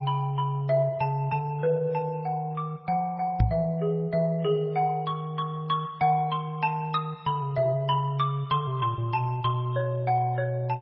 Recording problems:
codec artefacts; MP3, then MP2, log-spectral distance 2 dB, nothing above 5.5 kHz
knock on the microphone; at 3.5 s; peak +8 dB vs average level

